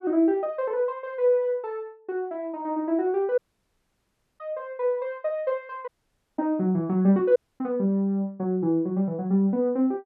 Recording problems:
audio cutting out; at 3.5 s for 1 s, at 6 s for 0.5 s and at 7.5 s

